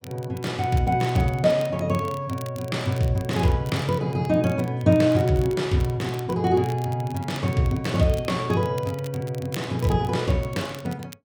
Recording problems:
crackle; vinyl, SNR 22 dB

